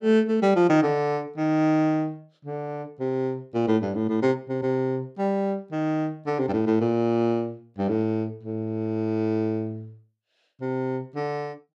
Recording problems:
none

